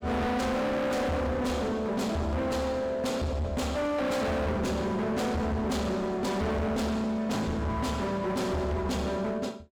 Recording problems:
distortion; hard clipping, signal-to-distortion ratio 6 dB

